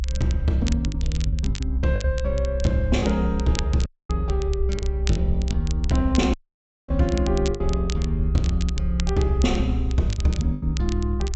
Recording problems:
treble cut off; nothing above 7.9 kHz
rumble; below 64 Hz, strongest tone 64 Hz, SNR 1 dB
crackling; vinyl, SNR 14 dB
lost packets; 7% of the sound replaced, filled with the last packet
dropout; at 4 s and at 6.5 s for 0.5 s

